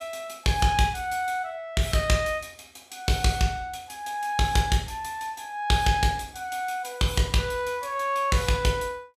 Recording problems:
none

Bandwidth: 14.5 kHz